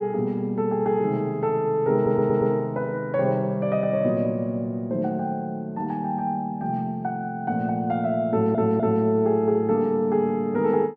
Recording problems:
stutter; at 2 s and at 8.5 s

